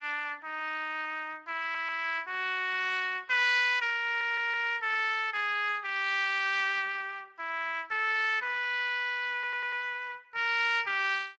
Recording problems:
lossy compression; Speex, log-spectral distance 4 dB
stutter; at 1.5 s, at 4 s and at 9.5 s

